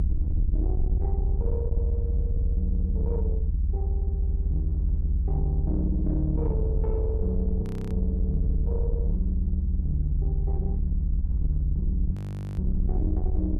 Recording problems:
distorted audio; soft clipping, signal-to-distortion ratio 10 dB
low-frequency rumble; below 74 Hz, SNR -5 dB
wind noise; below 300 Hz, SNR 17 dB
frozen audio; at 7.5 s and at 12 s

